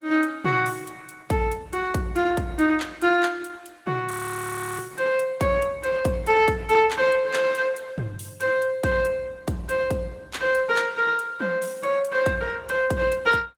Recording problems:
lossy codec; Opus, log-spectral distance 3 dB, nothing above 19 kHz
audio freezing; at 4 s for 0.5 s

